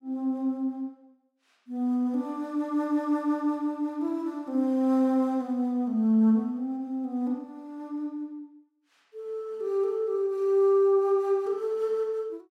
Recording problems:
none

